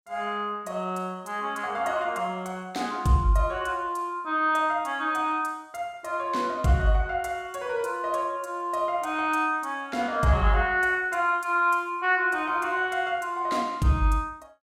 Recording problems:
none

